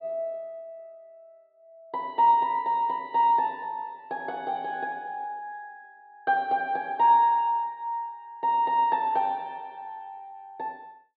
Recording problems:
treble missing; nothing above 4.6 kHz

